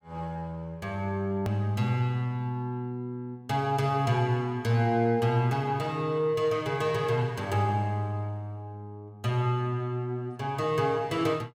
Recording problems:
click at an edit; at 1.5 s

